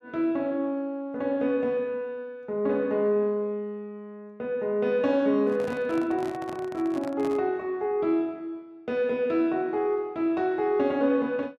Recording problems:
microphone handling noise; from 5.5 to 7.5 s; peak -8 dB vs average level

